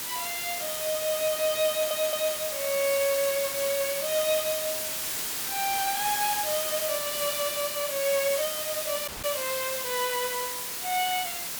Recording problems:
background hiss; slope 0 dB per octave, SNR 1 dB
audio stuttering; at 1.5 s
dropout; at 9 s

